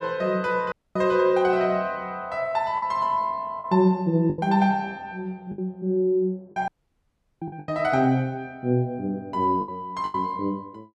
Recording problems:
lost packets; 6% of the sound replaced, filled with the last packet
dropout; at 0.5 s and at 6.5 s for 0.5 s

